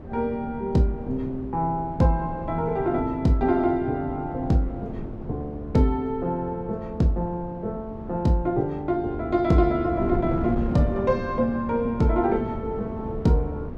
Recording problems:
wind noise; below 320 Hz, SNR 10 dB

